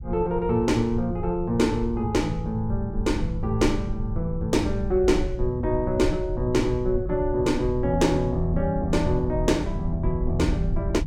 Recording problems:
low-frequency rumble; below 88 Hz, SNR 7 dB

